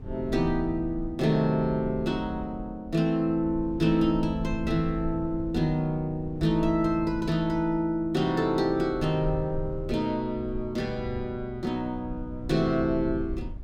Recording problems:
rumble; below 90 Hz, SNR 13 dB

